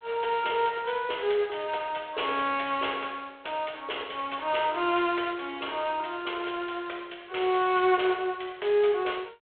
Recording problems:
phone line; 340 Hz to 3.4 kHz, G.726

